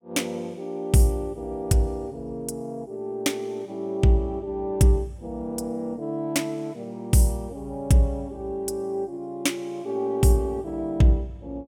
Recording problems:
none

